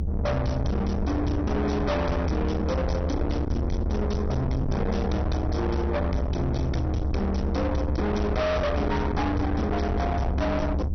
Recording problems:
lossy codec; MP2, log-spectral distance 2 dB, nothing above 6 kHz
distortion; soft clipping, signal-to-distortion ratio 6 dB
rumble; below 410 Hz, SNR 1 dB

